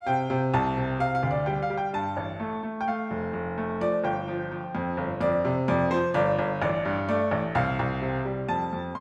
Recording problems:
none

